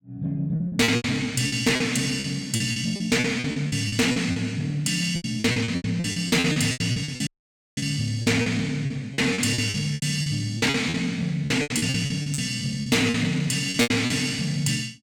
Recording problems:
distortion; soft clipping, signal-to-distortion ratio 10 dB
lost packets; 18% of the sound replaced, filled with repeated pitch periods
audio cutting out; at 7.5 s for 0.5 s

